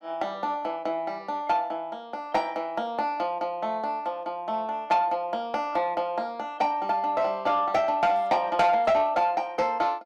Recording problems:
distortion; soft clipping, signal-to-distortion ratio 12 dB

